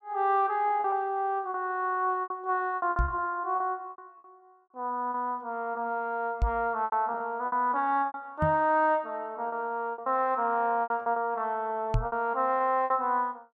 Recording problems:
lost packets; 10% of the sound replaced, filled with repeated pitch periods
microphone thump; 4 times, first at 3 s; peak +4 dB vs average level

